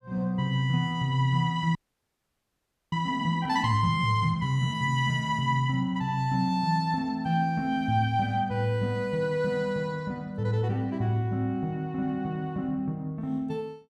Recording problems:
frozen audio; at 2 s for 1 s

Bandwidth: 14.5 kHz